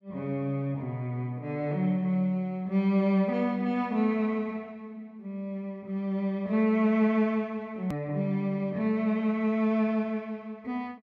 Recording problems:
edit click; at 8 s

